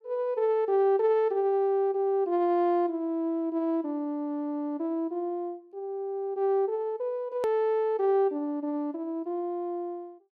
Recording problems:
click at an edit; at 7.5 s

